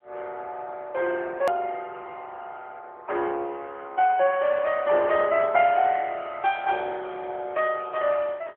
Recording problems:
phone line; 300 Hz to 3.6 kHz, AMR-NB
click at an edit; at 1.5 s

